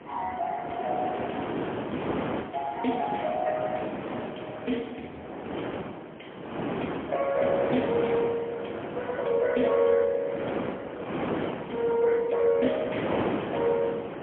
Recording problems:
telephone audio; 170 Hz to 3.3 kHz, AMR-NB, then MP3
wind on the microphone; below 870 Hz, SNR 6 dB

